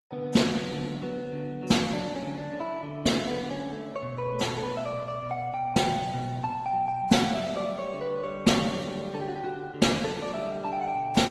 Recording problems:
lossy compression; Opus, then AAC, log-spectral distance 3 dB

